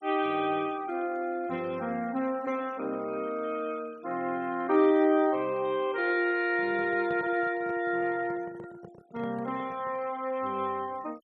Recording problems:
noise reduction artefacts; signal-to-artefact ratio 25 dB
microphone handling noise; from 6.5 to 10 s; peak -9 dB vs average level

